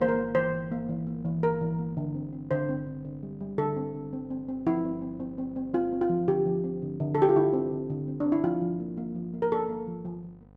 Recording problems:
electrical hum; 50 Hz, harmonics up to 1.3 kHz, SNR 23 dB

